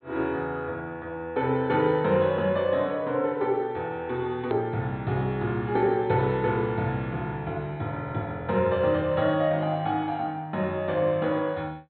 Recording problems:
treble cut off; nothing above 4.2 kHz
edit click; at 4.5 s

